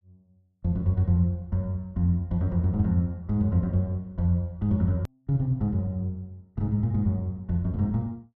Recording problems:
click at an edit; at 5 s

